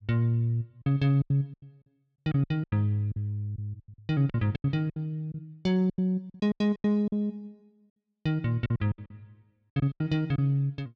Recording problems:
lost packets; 16% of the sound replaced, filled with silence

